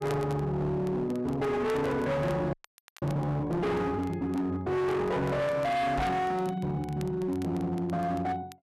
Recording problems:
distorted audio; hard clipping, signal-to-distortion ratio 7 dB
crackle; vinyl, SNR 25 dB
frozen audio; at 2.5 s
knock on the microphone; at 6 s; peak +3 dB vs average level

